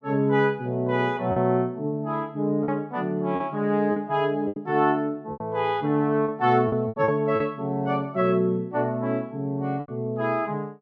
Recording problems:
lost packets; 6% of the sound replaced, filled with repeated pitch periods

